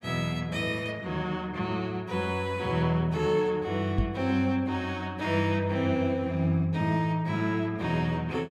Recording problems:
knock on the microphone; at 4 s; peak +4 dB vs average level

